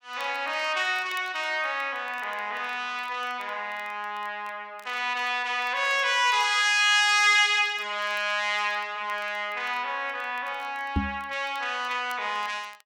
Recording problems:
crackling; vinyl, SNR 29 dB
microphone thump; at 11 s; peak +3 dB vs average level

